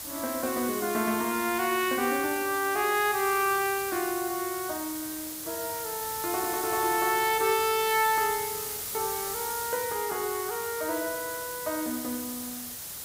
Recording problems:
hiss; slope 0 dB per octave, SNR 5 dB

